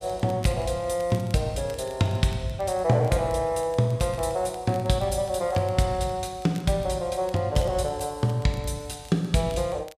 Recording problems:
crackle; vinyl, SNR 26 dB

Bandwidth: 14.5 kHz